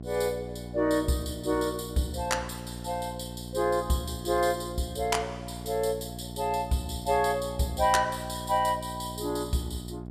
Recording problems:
mains hum; 60 Hz, harmonics up to 780 Hz, SNR 11 dB

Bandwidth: 14.5 kHz